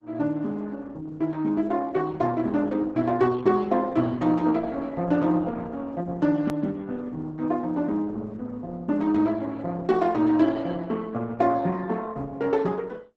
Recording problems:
lossy compression; Opus, log-spectral distance 3 dB, nothing above 13.1 kHz
hard cut with a click; at 6.5 s

